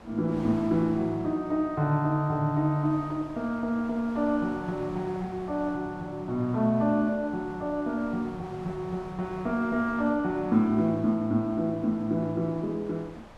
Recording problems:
wind noise; below 1.2 kHz, SNR 19 dB

